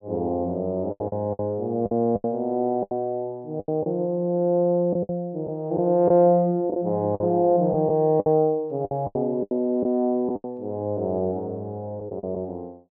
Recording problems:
lost packets; 9% of the sound replaced, filled with the last packet

